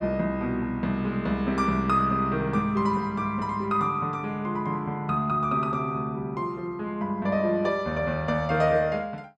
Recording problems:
none

